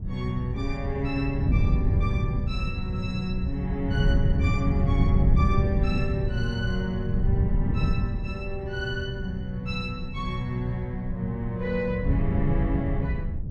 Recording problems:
wind on the microphone; below 130 Hz, SNR -3 dB

